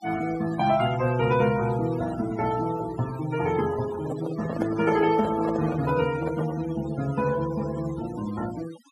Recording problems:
noise reduction artefacts; signal-to-artefact ratio 14 dB
microphone handling noise; from 4 to 6.5 s; peak -1 dB vs average level

